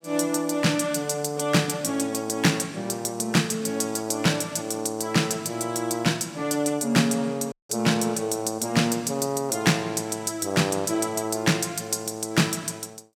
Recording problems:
dropout; at 7.5 s

